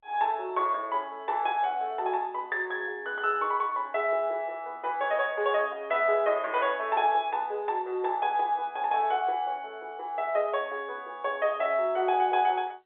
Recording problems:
phone line; 320 Hz to 3.6 kHz, G.711

